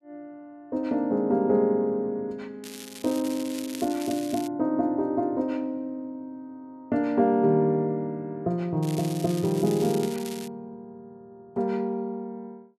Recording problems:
crackling; from 2.5 to 4.5 s and from 9 to 10 s; loose cable, SNR 14 dB

